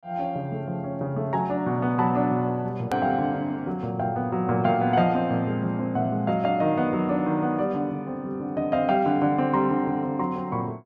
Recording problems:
click at an edit; at 3 s

